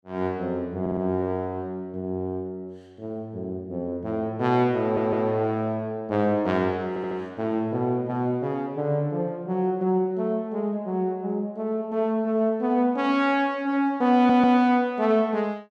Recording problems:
stutter; 4 times, first at 1 s

